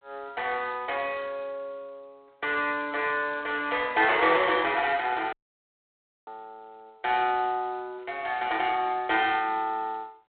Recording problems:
phone line; 340 Hz to 3.8 kHz, G.726
dropout; at 5.5 s for 1 s

